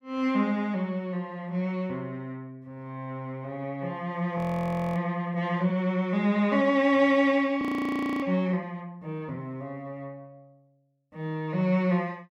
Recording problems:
frozen audio; at 4.5 s for 0.5 s and at 7.5 s for 0.5 s

